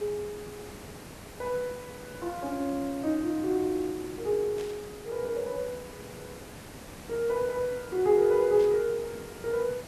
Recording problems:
background hiss; slope -5 dB per octave, SNR 15 dB
burst of static; at 4.5 s and at 8.5 s; peak -13 dB vs average level

